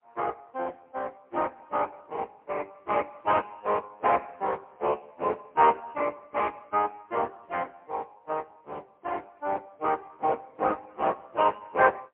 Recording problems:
telephone audio; 370 Hz to 3.3 kHz, AMR-NB, then MP3

